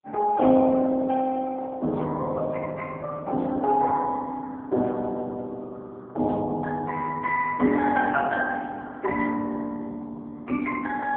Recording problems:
telephone audio; 190 Hz to 2.3 kHz, AMR-NB

